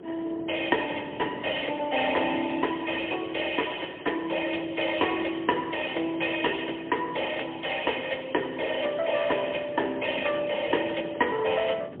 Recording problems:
phone line; 280 Hz to 3.4 kHz, AMR-NB, then MP3
wind on the microphone; below 470 Hz, SNR 18 dB

